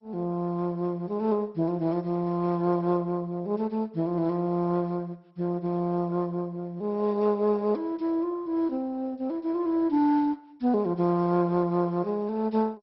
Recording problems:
lossy compression; MP2, log-spectral distance 2 dB, nothing above 5.5 kHz

